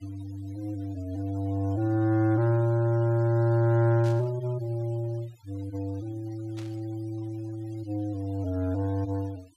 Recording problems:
denoising artefacts; signal-to-artefact ratio 25 dB
static burst; at 4 s and at 6.5 s; peak -14 dB vs average level

